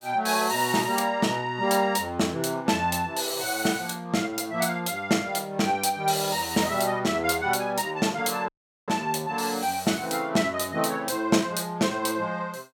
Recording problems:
audio cutting out; at 8.5 s

